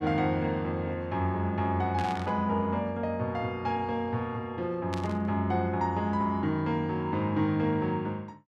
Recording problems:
static burst; at 2 s and at 5 s; peak -6 dB vs average level

